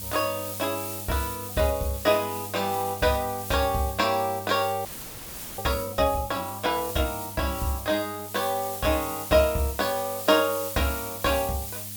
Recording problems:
mains hum; 50 Hz, harmonics up to 800 Hz, SNR 18 dB
hiss; slope +4 dB per octave, SNR 8 dB
frozen audio; at 5 s for 0.5 s

